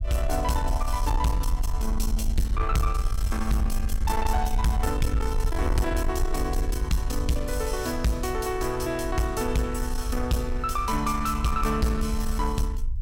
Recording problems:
distorted audio; soft clipping, signal-to-distortion ratio 11 dB
low-frequency rumble; below 60 Hz, SNR 3 dB

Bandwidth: 17 kHz